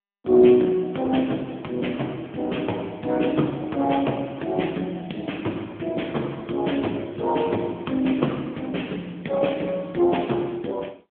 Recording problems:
telephone audio; 150 Hz to 3.4 kHz, AMR-NB

